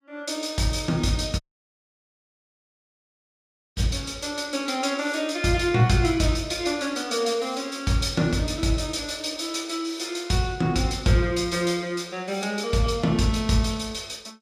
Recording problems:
audio cutting out; at 1.5 s for 2.5 s

